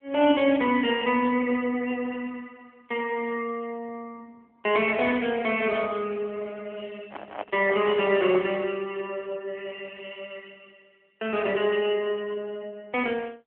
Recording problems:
phone line; 240 Hz to 3.3 kHz, AMR-NB
handling noise; from 7 to 8.5 s; peak -4 dB vs average level

